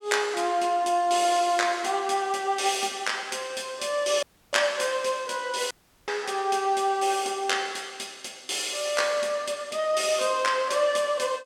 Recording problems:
dropout; at 4 s and at 5.5 s

